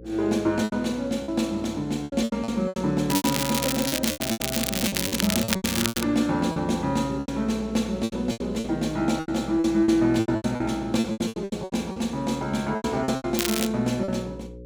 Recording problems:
electrical hum; 60 Hz, harmonics up to 540 Hz, SNR 16 dB
packet loss; 16% of the sound replaced, filled with repeated pitch periods
crackle; from 3 to 6 s and at 13 s; loose cable, SNR 2 dB

